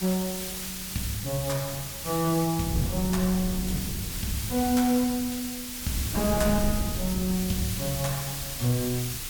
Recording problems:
background hiss; slope +3 dB per octave, SNR 5 dB
wind noise; below 160 Hz, SNR 8 dB

